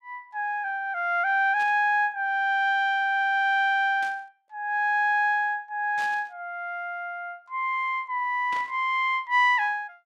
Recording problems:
static burst; 4 times, first at 1.5 s; peak -13 dB vs average level

